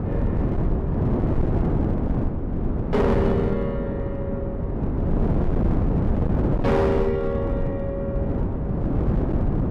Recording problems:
distorted audio; hard clipping, signal-to-distortion ratio 11 dB
wind on the microphone; below 300 Hz, SNR -2 dB

